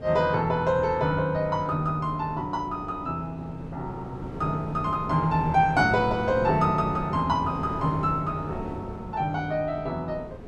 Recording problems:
wind on the microphone; below 450 Hz, SNR 12 dB

